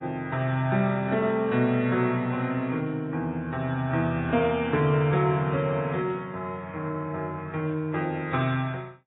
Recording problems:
codec artefacts; AAC, log-spectral distance 2 dB, nothing above 3.7 kHz

